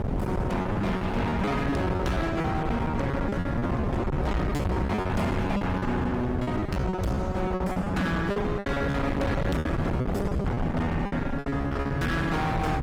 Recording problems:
lossy compression; Opus, log-spectral distance 2 dB, nothing above 20.1 kHz
distortion; hard clipping, signal-to-distortion ratio 6 dB
hum; 60 Hz, harmonics up to 360 Hz, SNR 16 dB
wind on the microphone; below 380 Hz, SNR 2 dB
lost packets; 18% of the sound replaced, filled with repeated pitch periods

